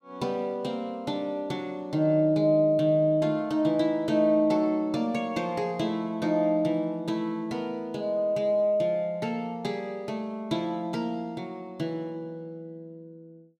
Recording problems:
none

